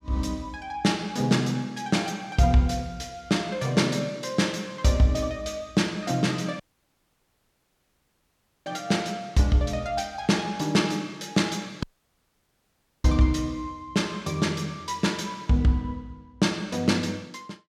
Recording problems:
dropout; at 6.5 s for 2 s and at 12 s for 1 s

